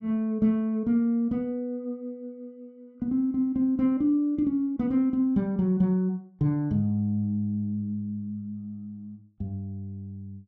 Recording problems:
none

